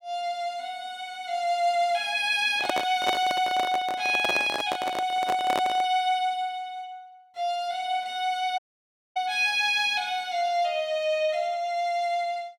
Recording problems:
microphone handling noise; from 2.5 to 6 s; peak +2 dB vs average level
dropout; at 8.5 s for 0.5 s

